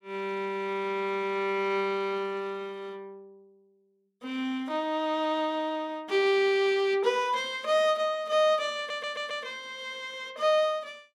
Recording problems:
audio stuttering; at 9 s

